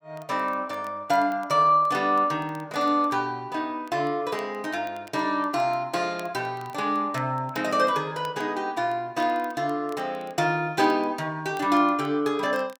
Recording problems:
crackling; vinyl, SNR 29 dB

